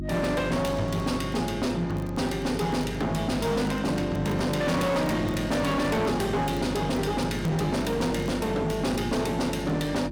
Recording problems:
distorted audio; hard clipping, uneven, signal-to-distortion ratio 7 dB
electrical hum; 50 Hz, harmonics up to 550 Hz, SNR 8 dB
crackle; vinyl, SNR 29 dB

